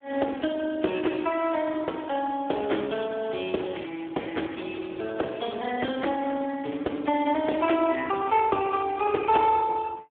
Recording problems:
telephone audio; 240 Hz to 2.6 kHz, Speex
crackle; from 1 to 4.5 s and from 4.5 to 7 s; loose cable, SNR 26 dB

